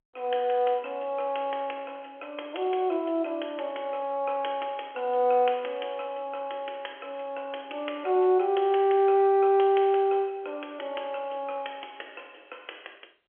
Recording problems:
telephone audio; 300 Hz to 3.3 kHz, G.711

